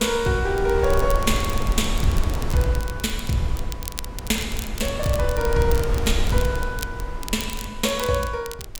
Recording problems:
wind on the microphone; below 88 Hz, SNR 4 dB
crackle; vinyl, SNR 13 dB

